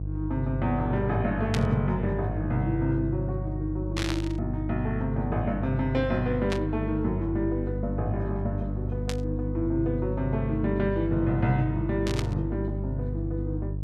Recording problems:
hum; 50 Hz, harmonics up to 350 Hz, SNR 3 dB
burst of static; 5 times, first at 1.5 s; peak +1 dB vs average level

